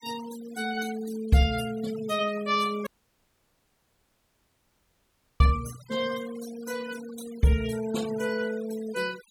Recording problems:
denoising artefacts; signal-to-artefact ratio 16 dB
dropout; at 3 s for 2.5 s

